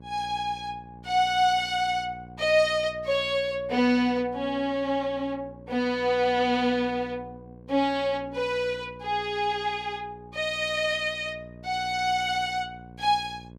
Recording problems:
hum; 60 Hz, harmonics up to 960 Hz, SNR 20 dB

